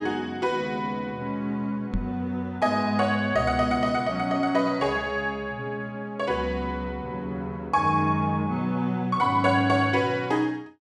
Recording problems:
microphone bump; at 2 s; peak -1 dB vs average level

